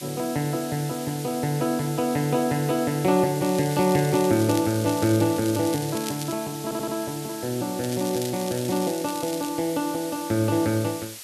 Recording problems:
background hiss; slope +2 dB per octave, SNR 12 dB
crackle; from 3.5 to 6.5 s and from 8 to 9.5 s; loose cable, SNR 13 dB
audio stuttering; at 6.5 s

